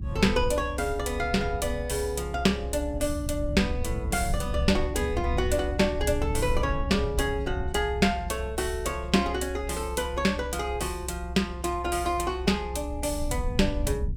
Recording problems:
rumble; below 80 Hz, SNR 6 dB

